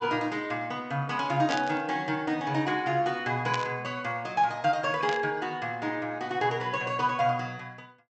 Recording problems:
treble missing; nothing above 8 kHz
burst of static; at 1.5 s, at 3.5 s and at 5 s; peak -1 dB vs average level

